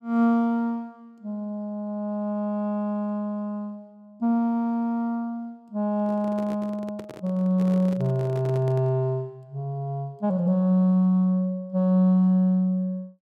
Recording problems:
microphone handling noise; from 6 to 9 s; peak -10 dB vs average level

